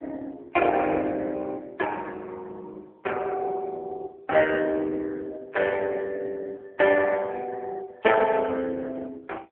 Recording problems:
phone line; 320 Hz to 3.3 kHz, AMR-NB

